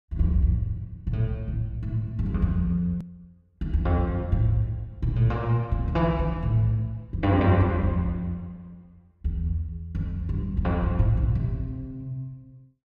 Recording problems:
click at an edit; at 3 s

